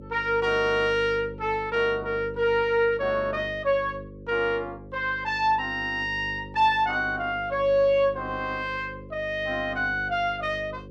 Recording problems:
hum; 50 Hz, harmonics up to 550 Hz, SNR 16 dB

